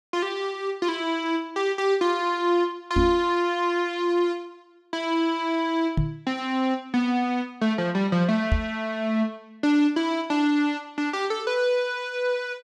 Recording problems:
microphone thump; at 3 s, at 6 s and at 8.5 s; peak +5 dB vs average level

